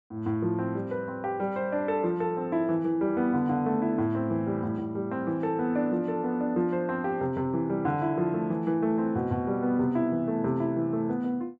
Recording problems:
none

